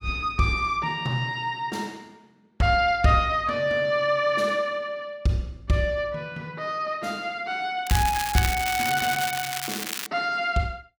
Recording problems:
crackle; from 8 to 10 s; loose cable, SNR 5 dB

